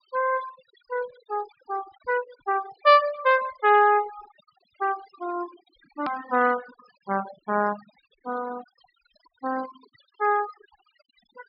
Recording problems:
treble cut off; nothing above 5.5 kHz
noise reduction artefacts; signal-to-artefact ratio 17 dB
hard cut with a click; at 6 s

